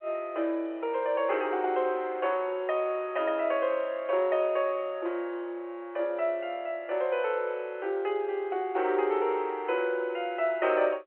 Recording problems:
phone line; 300 Hz to 3.2 kHz, G.711

